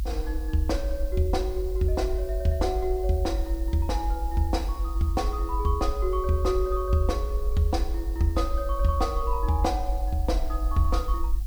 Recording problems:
hiss; slope +3 dB per octave, SNR 22 dB
rumble; below 52 Hz, strongest tone 50 Hz, SNR 2 dB

